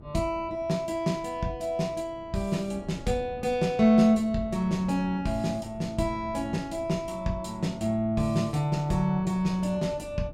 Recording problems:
wind noise; below 260 Hz, SNR 19 dB

